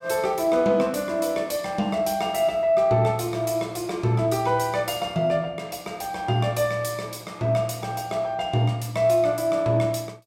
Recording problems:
none

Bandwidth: 16.5 kHz